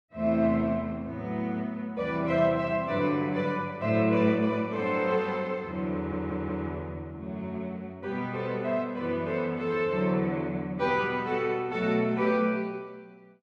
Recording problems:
stutter; at 6 s

